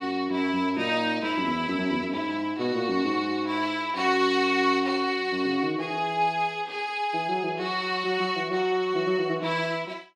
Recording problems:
none

